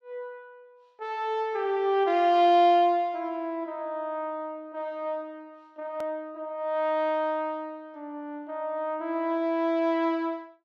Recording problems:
edit click; at 6 s

